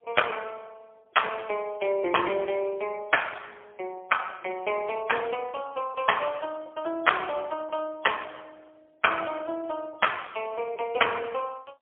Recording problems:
telephone audio; 300 Hz to 3.3 kHz, AMR-NB, then MP3

